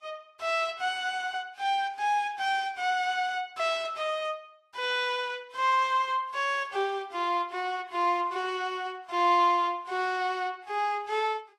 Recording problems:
lossy codec; Vorbis, log-spectral distance 3 dB, nothing above 12.3 kHz

